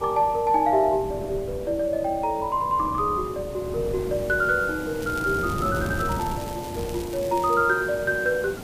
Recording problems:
background hiss; SNR 15 dB
wind on the microphone; below 310 Hz, SNR 13 dB
crackling; from 5 to 7.5 s; loose cable, SNR 19 dB

